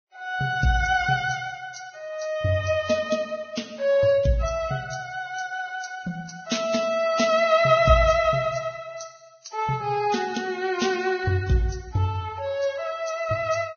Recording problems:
lossy compression; Vorbis, log-spectral distance 4 dB, nothing above 6.5 kHz

